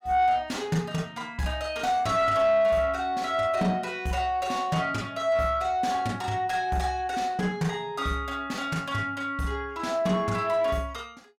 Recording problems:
distortion; soft clipping, signal-to-distortion ratio 10 dB

